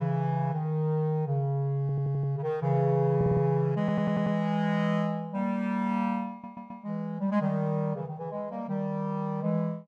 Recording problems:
audio stuttering; 4 times, first at 2 s

